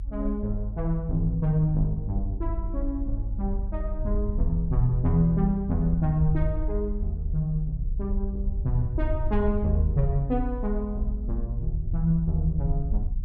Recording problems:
rumble; below 54 Hz, SNR 3 dB

